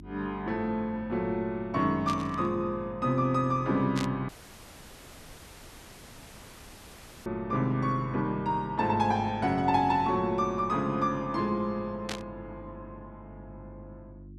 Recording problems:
hum; 50 Hz, harmonics up to 350 Hz, SNR 20 dB
static burst; at 2 s, at 4 s and at 12 s; peak -3 dB vs average level
dropout; at 4.5 s for 3 s

